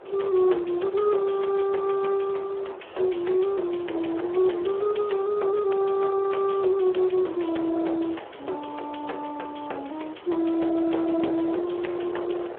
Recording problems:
telephone audio; 300 Hz to 3.3 kHz, Speex
distorted audio; soft clipping, signal-to-distortion ratio 15 dB
wind on the microphone; below 740 Hz, SNR 15 dB

